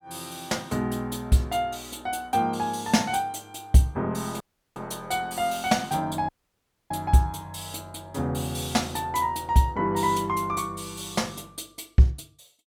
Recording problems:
audio cutting out; at 4.5 s and at 6.5 s for 0.5 s

